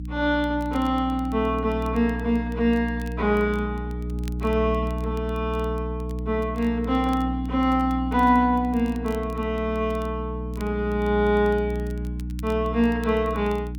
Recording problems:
electrical hum; 60 Hz, harmonics up to 300 Hz, SNR 7 dB
crackling; vinyl, SNR 28 dB

